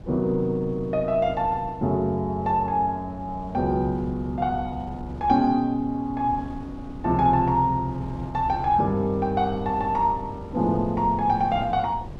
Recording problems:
wind on the microphone; below 250 Hz, SNR 16 dB

